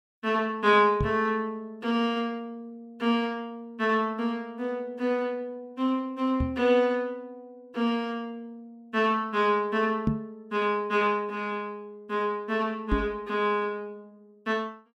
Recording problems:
knock on the microphone; 4 times, first at 1 s; peak +5 dB vs average level

